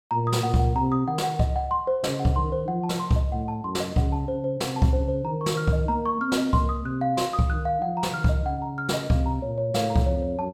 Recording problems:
none

